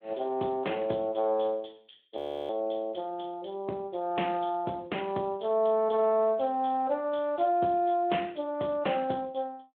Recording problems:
telephone audio; 260 Hz to 3.4 kHz, Speex
frozen audio; at 2 s

